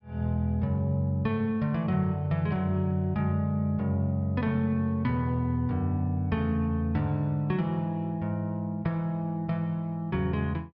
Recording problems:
treble missing; nothing above 5.5 kHz

